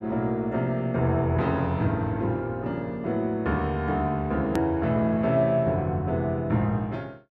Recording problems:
edit click; at 4.5 s

